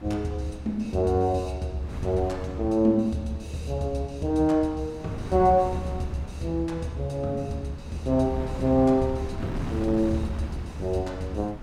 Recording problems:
wind on the microphone; below 300 Hz, SNR 13 dB

